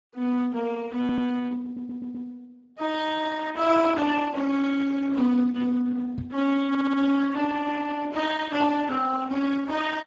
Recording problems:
lossy codec; Opus, then Speex, log-spectral distance 4 dB
audio stuttering; at 1 s, at 1.5 s and at 6.5 s
knock on the microphone; at 6 s; peak -8 dB vs average level

